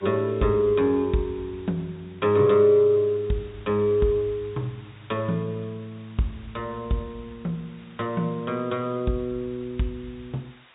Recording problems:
treble cut off; nothing above 4 kHz
background hiss; SNR 27 dB

